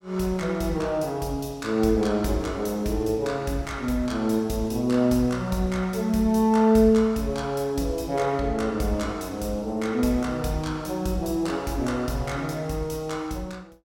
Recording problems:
none

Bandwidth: 17 kHz